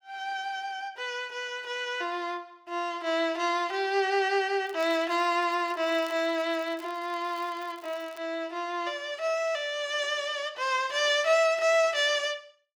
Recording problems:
crackling; from 4.5 to 8 s; loose cable, SNR 25 dB

